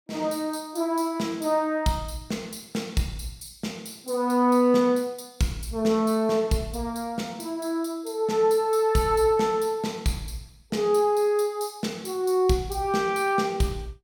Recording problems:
none

